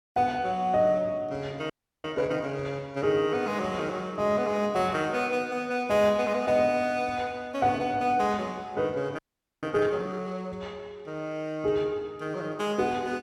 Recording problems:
frozen audio; at 1.5 s and at 9 s

